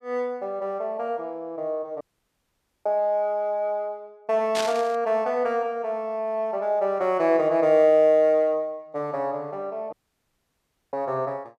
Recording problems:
audio cutting out; at 2 s for 1 s and at 10 s for 1 s
burst of static; at 4.5 s; peak -1 dB vs average level

